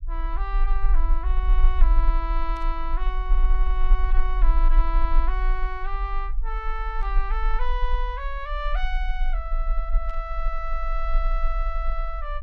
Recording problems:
rumble; below 40 Hz, strongest tone 24 Hz, SNR -6 dB
static burst; at 2.5 s, at 7 s and at 10 s; peak -13 dB vs average level

